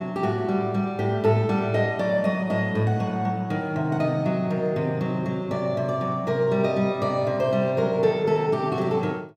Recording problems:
none

